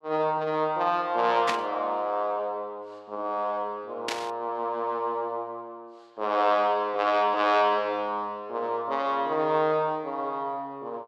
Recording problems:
static burst; at 1.5 s and at 4 s; peak +2 dB vs average level

